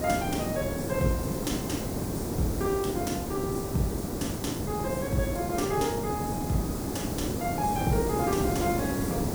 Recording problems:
background hiss; SNR 0 dB

